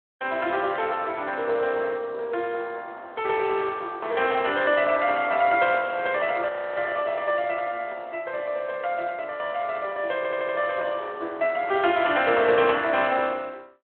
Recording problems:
phone line; 300 Hz to 3.5 kHz, Speex
audio freezing; at 6.5 s
stutter; at 10 s

